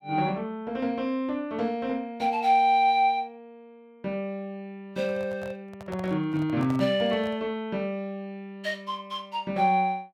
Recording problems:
microphone handling noise; from 5 to 7.5 s; peak -8 dB vs average level

